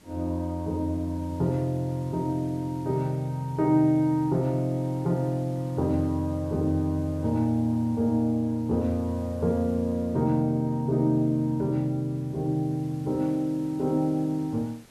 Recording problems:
hiss; slope -3 dB per octave, SNR 27 dB

